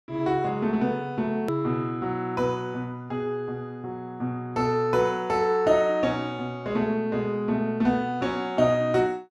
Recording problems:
hard cut with a click; at 1.5 s

